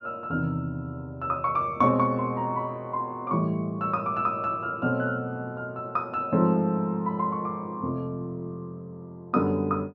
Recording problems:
none

